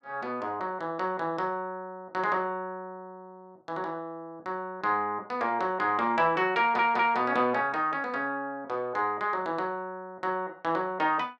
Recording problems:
audio stuttering; at 6.5 s

